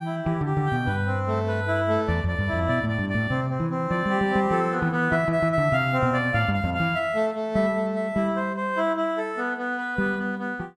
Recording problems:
none

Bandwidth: 14.5 kHz